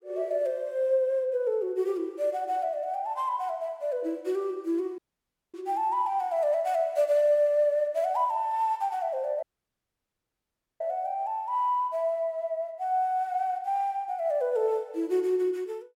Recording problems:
audio cutting out; at 5 s for 0.5 s and at 9.5 s for 1.5 s

